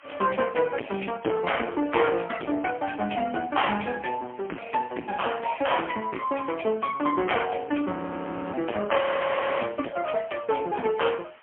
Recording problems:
telephone audio; 240 Hz to 3.2 kHz, AMR-NB, then MP3
distorted audio; soft clipping, signal-to-distortion ratio 8 dB
background hiss; SNR 25 dB
frozen audio; at 8 s for 0.5 s and at 9 s for 0.5 s

